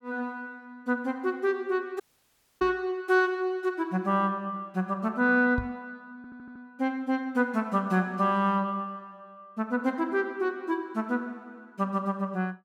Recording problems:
audio cutting out; at 2 s for 0.5 s
microphone thump; at 2.5 s and at 5.5 s; peak -1 dB vs average level
audio stuttering; at 6 s

